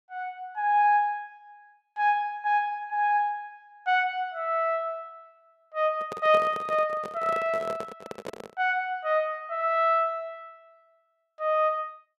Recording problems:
handling noise; from 6 to 8.5 s; peak -6 dB vs average level

